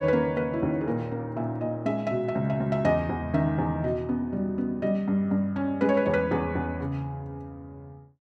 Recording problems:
none

